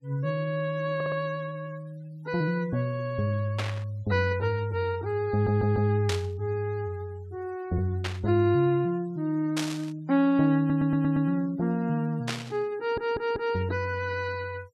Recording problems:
denoising artefacts; signal-to-artefact ratio 26 dB
audio stuttering; 4 times, first at 1 s
static burst; 5 times, first at 3.5 s; peak 0 dB vs average level

